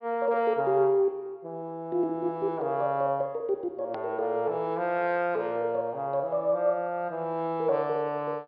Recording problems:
low-pass filter; nothing above 5.5 kHz
edit click; at 4 s

